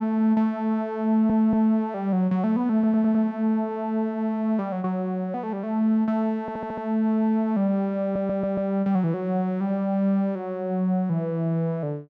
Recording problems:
audio stuttering; 4 times, first at 1 s

